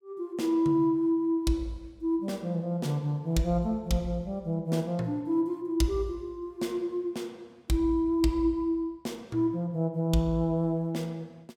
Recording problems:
none

